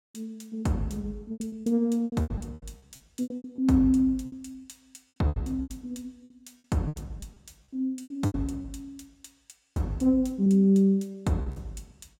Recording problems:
lost packets; 14% of the sound replaced, filled with repeated pitch periods

